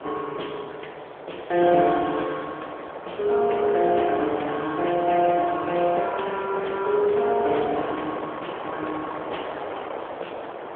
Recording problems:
phone line; 300 Hz to 3.3 kHz, AMR-NB
wind on the microphone; below 1.1 kHz, SNR 10 dB

